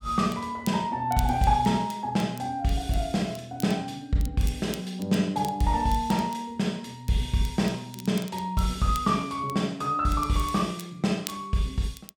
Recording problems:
crackle; vinyl, SNR 19 dB

